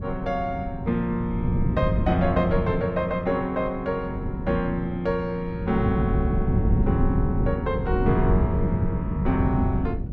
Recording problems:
wind on the microphone; below 180 Hz, SNR 0 dB

